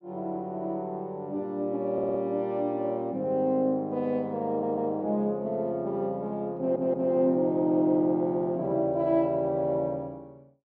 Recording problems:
treble cut off; nothing above 8 kHz
audio stuttering; at 2 s, at 4.5 s and at 6.5 s

